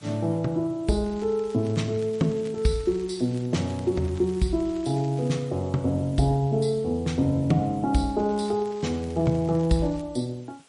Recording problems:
lossy codec; MP3, log-spectral distance 3 dB, nothing above 10.1 kHz
hiss; slope -1 dB per octave, SNR 28 dB
crackling; from 1 to 3.5 s, from 3.5 to 5.5 s and from 8 to 10 s; loose cable, SNR 25 dB

